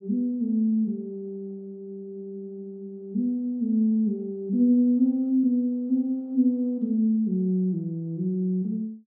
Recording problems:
none

